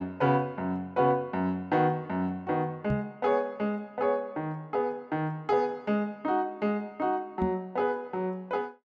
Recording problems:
knock on the microphone; at 3 s and at 7.5 s; peak +2 dB vs average level

